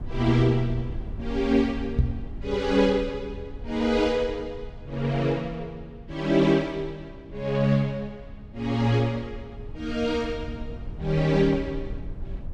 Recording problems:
low-frequency rumble; below 90 Hz, SNR 14 dB
microphone bump; at 2 s; peak +7 dB vs average level

